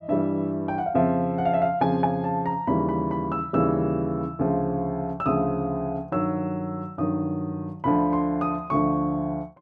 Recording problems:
none

